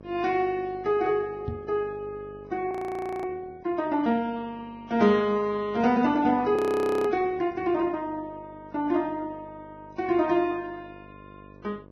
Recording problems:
lossy compression; Vorbis, log-spectral distance 2 dB, nothing above 13.1 kHz
hum; 50 Hz, harmonics up to 1.3 kHz, SNR 22 dB
microphone thump; at 1.5 s; peak -2 dB vs average level
audio freezing; at 2.5 s for 0.5 s and at 6.5 s

